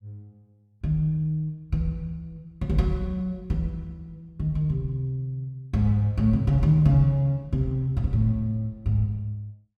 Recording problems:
none

